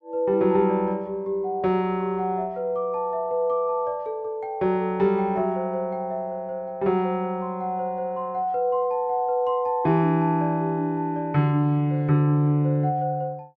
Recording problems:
none

